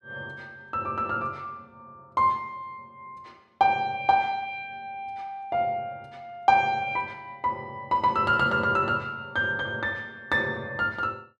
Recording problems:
none

